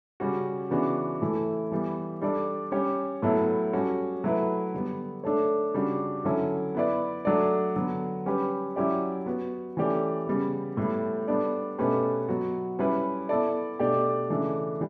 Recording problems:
none

